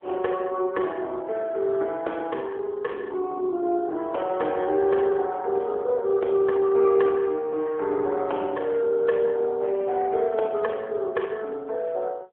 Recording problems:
telephone audio; 300 Hz to 3.3 kHz, AMR-NB

